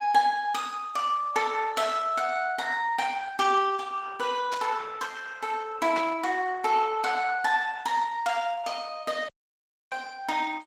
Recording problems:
lossy codec; Opus, log-spectral distance 4 dB
burst of static; at 4.5 s and at 6 s; peak -4 dB vs average level
dropout; at 9.5 s for 0.5 s

